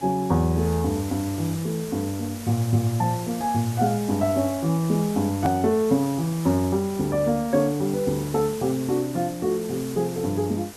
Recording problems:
background hiss; slope -3 dB per octave, SNR 15 dB
hard cut with a click; at 5.5 s

